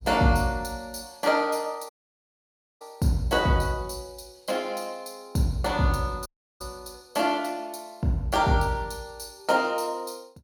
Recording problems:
dropout; at 2 s for 1 s and at 6.5 s

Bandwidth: 17.5 kHz